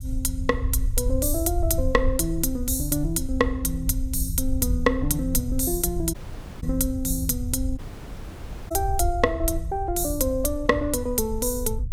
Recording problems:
low-frequency rumble; below 74 Hz, SNR 6 dB
dropout; at 6 s and at 8 s for 1 s

